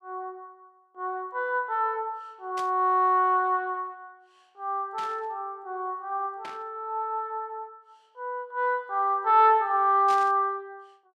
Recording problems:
static burst; 4 times, first at 2.5 s; peak -10 dB vs average level

